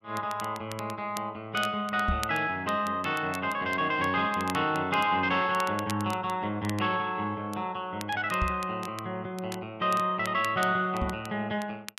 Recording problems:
crackling; vinyl, SNR 17 dB
knock on the microphone; at 2 s, at 8.5 s and at 11 s; peak +3 dB vs average level

